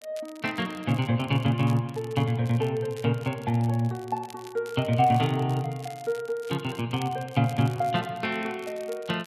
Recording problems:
crackling; vinyl, SNR 22 dB

